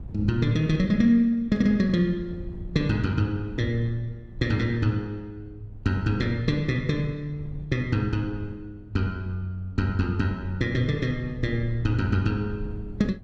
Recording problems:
wind on the microphone; below 110 Hz, SNR 16 dB

